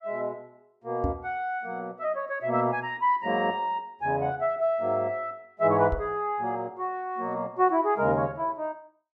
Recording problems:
knock on the microphone; at 1 s and at 6 s; peak +2 dB vs average level

